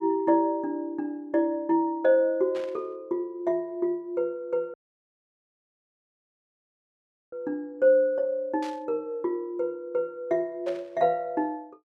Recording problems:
burst of static; at 2.5 s, at 8.5 s and at 11 s; peak -12 dB vs average level
audio cutting out; at 4.5 s for 2.5 s

